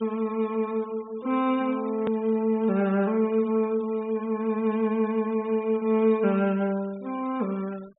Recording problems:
treble missing; nothing above 4 kHz
noise reduction artefacts; signal-to-artefact ratio 24 dB
hard cut with a click; at 2 s

